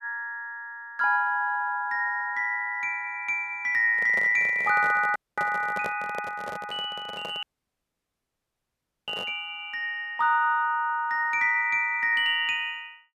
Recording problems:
microphone handling noise; from 4 to 9.5 s; peak -5 dB vs average level
audio cutting out; at 5 s and at 7.5 s for 1.5 s

